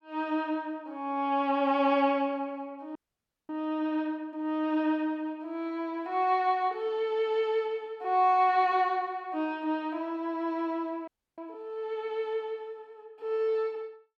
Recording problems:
audio freezing; at 3 s for 0.5 s and at 11 s

